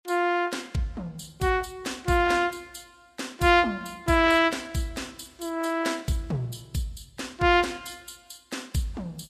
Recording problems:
lossy codec; Vorbis, log-spectral distance 4 dB, nothing above 13.8 kHz

